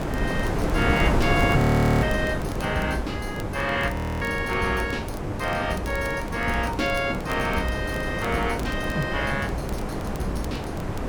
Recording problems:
hum; 50 Hz, harmonics up to 1.8 kHz, SNR 13 dB
wind on the microphone; below 630 Hz, SNR 1 dB
crackling; vinyl, SNR 21 dB
audio freezing; at 1.5 s and at 4 s

